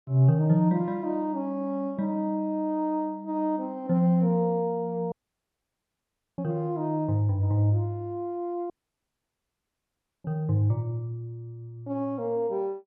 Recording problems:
audio cutting out; at 5 s for 1.5 s and at 8.5 s for 1.5 s

